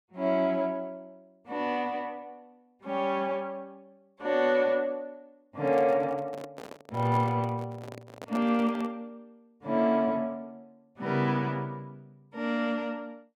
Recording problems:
handling noise; from 5.5 to 9 s; peak -5 dB vs average level

